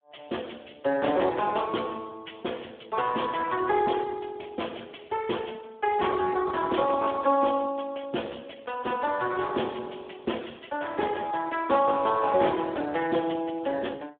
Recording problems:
telephone audio; 280 Hz to 3.5 kHz, Speex

